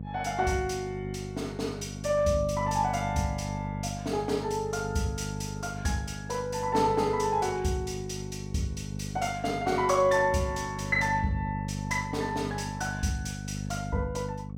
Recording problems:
hum; 50 Hz, harmonics up to 550 Hz, SNR 7 dB

